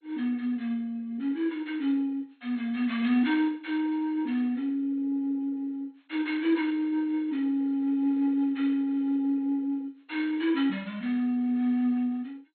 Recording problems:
lossy compression; MP2, log-spectral distance 2 dB, nothing above 4.2 kHz

